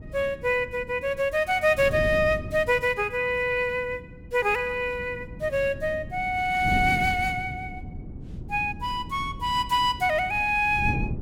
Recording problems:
wind on the microphone; below 220 Hz, SNR 13 dB

